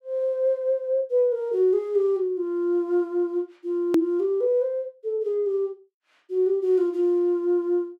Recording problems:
edit click; at 4 s

